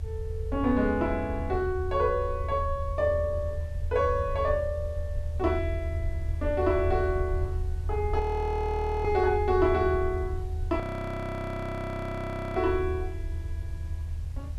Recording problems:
hiss; slope -4 dB per octave, SNR 28 dB
rumble; below 82 Hz, SNR 5 dB
frozen audio; at 8 s for 1 s and at 11 s for 2 s

